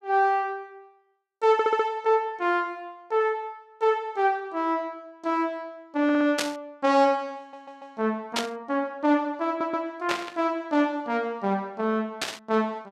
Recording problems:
audio stuttering; 4 times, first at 1.5 s
burst of static; 4 times, first at 6.5 s; peak +3 dB vs average level

